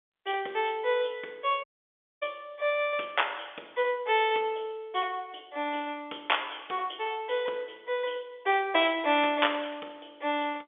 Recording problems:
telephone audio; 340 Hz to 3.6 kHz, G.711
audio cutting out; at 1.5 s for 0.5 s

